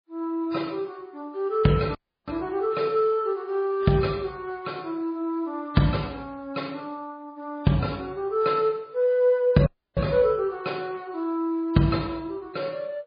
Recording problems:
codec artefacts; MP3, log-spectral distance 2 dB, nothing above 4.4 kHz
dropout; at 2 s and at 9.5 s

